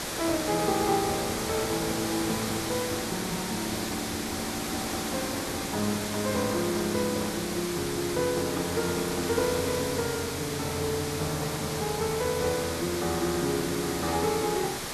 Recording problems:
hiss; slope -3 dB per octave, SNR 2 dB

